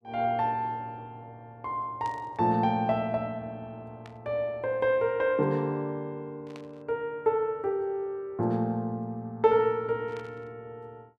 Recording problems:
burst of static; 4 times, first at 2 s; peak -14 dB vs average level

